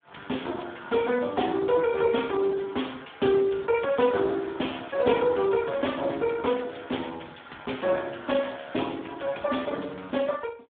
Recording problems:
telephone audio; 220 Hz to 3.6 kHz, Speex

